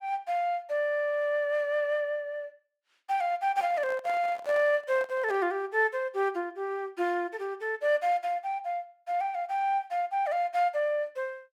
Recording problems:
microphone handling noise; from 3.5 to 5.5 s; peak -9 dB vs average level

